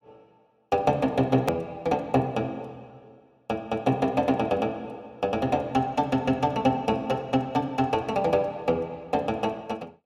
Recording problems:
edit click; at 1.5 s

